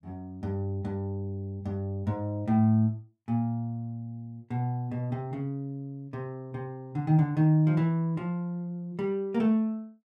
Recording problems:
none

